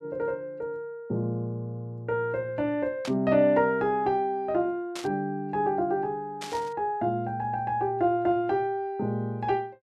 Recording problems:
burst of static; at 3 s, at 5 s and at 6.5 s; peak -5 dB vs average level

